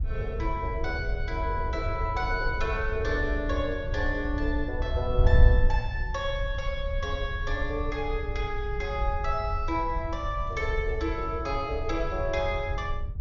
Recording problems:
treble cut off; nothing above 7.1 kHz
wind on the microphone; below 74 Hz, SNR 1 dB

